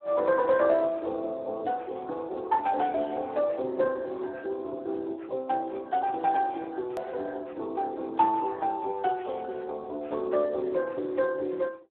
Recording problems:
telephone audio; 280 Hz to 3 kHz, Speex
hard cut with a click; at 7 s

